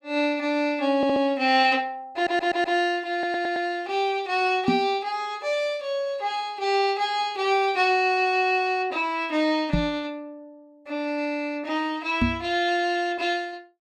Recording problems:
audio stuttering; at 1 s, at 2 s and at 3 s
knock on the microphone; at 4.5 s, at 9.5 s and at 12 s; peak +6 dB vs average level

